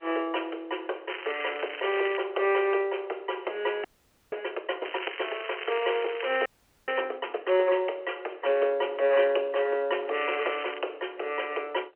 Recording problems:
phone line; 320 Hz to 3.1 kHz, G.711
crackle; from 1 to 2 s, from 5 to 7 s and at 10 s; loose cable, SNR 10 dB
frozen audio; at 4 s and at 6.5 s

